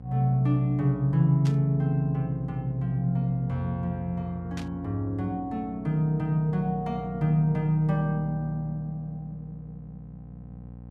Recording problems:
hum; 60 Hz, harmonics up to 840 Hz, SNR 16 dB
static burst; at 1.5 s and at 4.5 s; peak -10 dB vs average level

